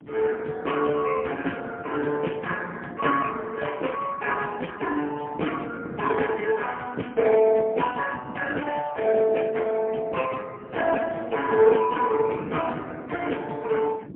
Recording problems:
phone line; 240 Hz to 3.2 kHz, AMR-NB, then MP3
wind noise; below 350 Hz, SNR 16 dB

